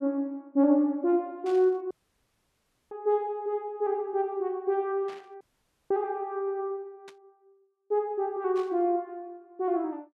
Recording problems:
static burst; 4 times, first at 1.5 s; peak -15 dB vs average level
audio cutting out; at 2 s for 1 s and at 5.5 s

